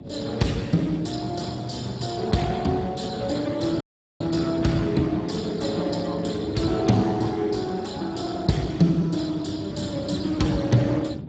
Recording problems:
lossy compression; Speex, log-spectral distance 5 dB, nothing above 7.6 kHz
hum; 50 Hz, harmonics up to 600 Hz, SNR 23 dB
wind on the microphone; below 310 Hz, SNR 12 dB
dropout; at 4 s

